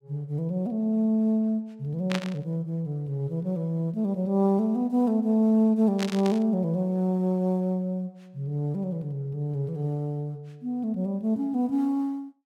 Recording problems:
burst of static; at 2 s and at 6 s; peak 0 dB vs average level

